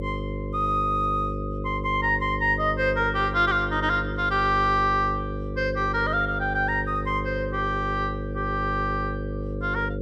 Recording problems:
electrical hum; 50 Hz, harmonics up to 550 Hz, SNR 6 dB

